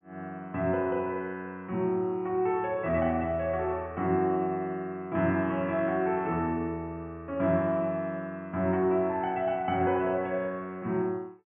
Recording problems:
low-pass filter; nothing above 3.2 kHz

